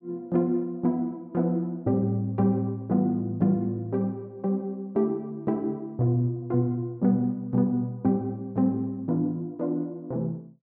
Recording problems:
none

